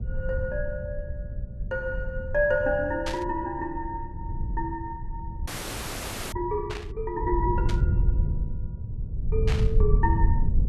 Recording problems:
rumble; below 92 Hz, SNR 0 dB
static burst; 4 times, first at 3 s; peak 0 dB vs average level
frozen audio; at 5.5 s for 1 s

